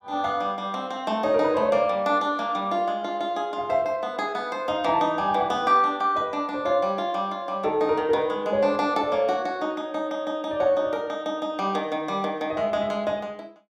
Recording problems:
none

